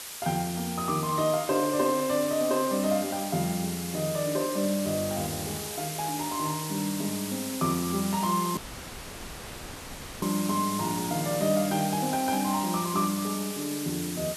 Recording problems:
background hiss; slope +1 dB per octave, SNR 7 dB
audio cutting out; at 8.5 s for 1.5 s

